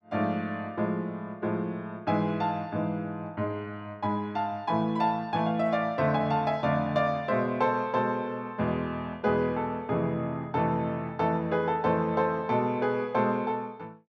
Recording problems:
none

